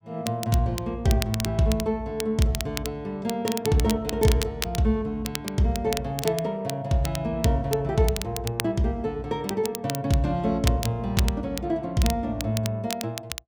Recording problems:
crackle; vinyl, SNR 9 dB

